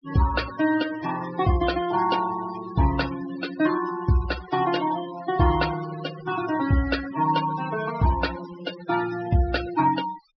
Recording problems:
treble cut off; nothing above 5.5 kHz
noise reduction artefacts; signal-to-artefact ratio 12 dB

